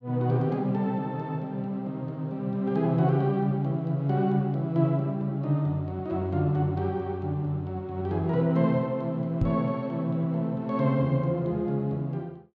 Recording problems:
microphone thump; at 9.5 s; peak +6 dB vs average level

